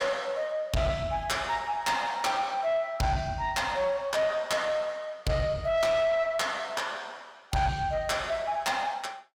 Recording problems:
distorted audio; soft clipping, signal-to-distortion ratio 10 dB

